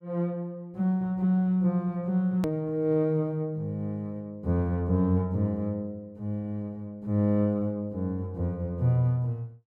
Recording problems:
click at an edit; at 2.5 s

